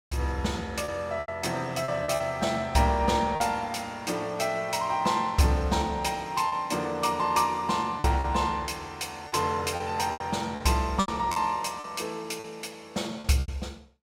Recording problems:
packet loss; 7% of the sound replaced, filled with repeated pitch periods

